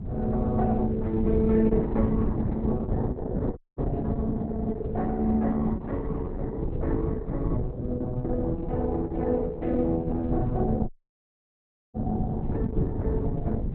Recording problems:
lossy compression; Opus, log-spectral distance 2 dB, nothing above 3.8 kHz
wind on the microphone; below 160 Hz, SNR 3 dB
dropout; at 3.5 s and at 11 s for 1 s

